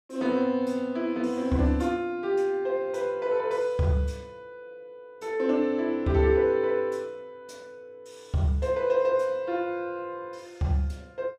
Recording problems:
none

